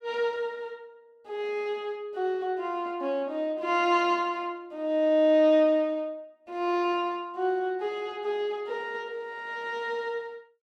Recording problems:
none

